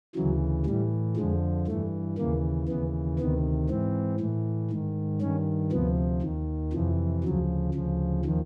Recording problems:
none

